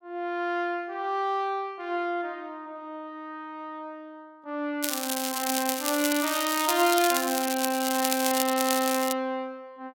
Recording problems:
crackle; from 5 to 9 s; loose cable, SNR 2 dB

